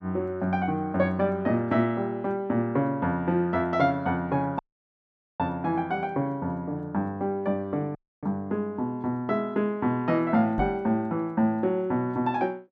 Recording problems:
audio cutting out; at 4.5 s for 1 s and at 8 s
microphone thump; at 11 s; peak -1 dB vs average level

